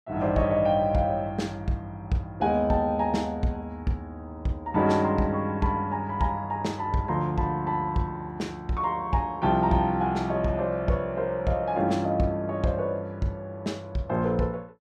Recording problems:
none

